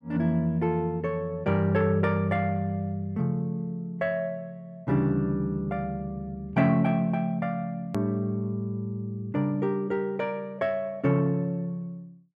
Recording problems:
hard cut with a click; at 8 s

